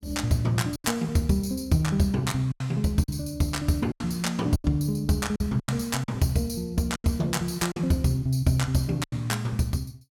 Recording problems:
lost packets; 7% of the sound replaced, filled with silence

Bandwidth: 17 kHz